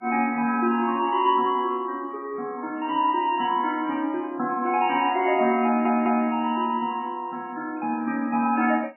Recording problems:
lossy codec; MP3, log-spectral distance 2 dB, nothing above 2.5 kHz
stutter; at 5.5 s

